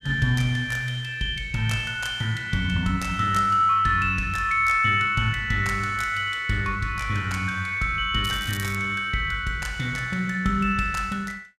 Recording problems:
crackling; at 8 s; loose cable, SNR 16 dB

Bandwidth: 14.5 kHz